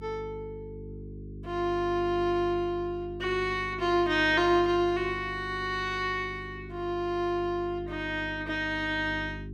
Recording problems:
hum; 50 Hz, harmonics up to 400 Hz, SNR 13 dB

